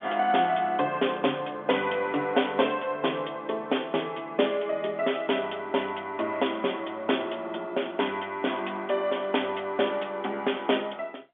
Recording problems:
telephone audio; 220 Hz to 3.5 kHz, G.711

